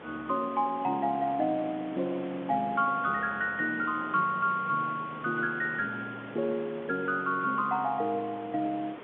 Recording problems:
telephone audio; 170 Hz to 3.8 kHz, G.711
hiss; SNR 15 dB

